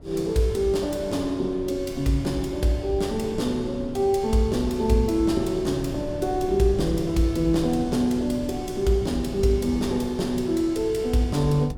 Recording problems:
wind on the microphone; below 220 Hz, SNR 14 dB

